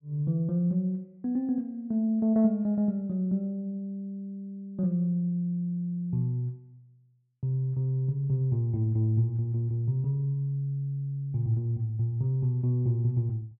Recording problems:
none

